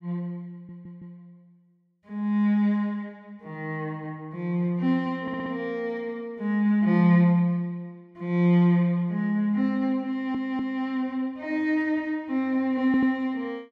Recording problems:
stutter; 4 times, first at 0.5 s

